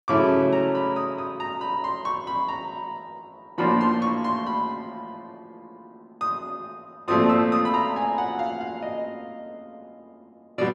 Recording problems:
none

